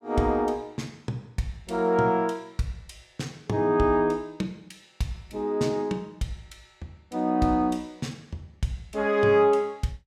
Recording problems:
none

